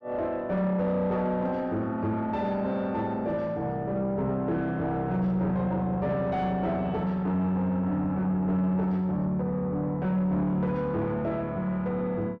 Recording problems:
distortion; soft clipping, signal-to-distortion ratio 11 dB

